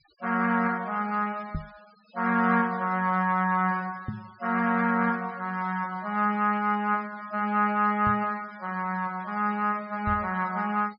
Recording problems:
low-pass filter; nothing above 5.5 kHz
denoising artefacts; signal-to-artefact ratio 26 dB
microphone bump; 4 times, first at 1.5 s; peak -2 dB vs average level

